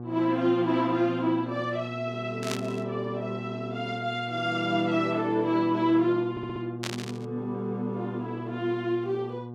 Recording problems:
electrical hum; 60 Hz, harmonics up to 1.2 kHz, SNR 9 dB
static burst; at 2.5 s and at 7 s; peak -1 dB vs average level
stutter; at 6.5 s

